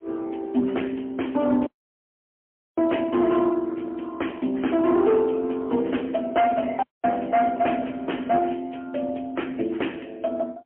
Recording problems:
telephone audio; 220 Hz to 3.2 kHz, AMR-NB, then MP3
distortion; hard clipping, uneven, signal-to-distortion ratio 10 dB
audio cutting out; at 1.5 s for 1 s and at 7 s

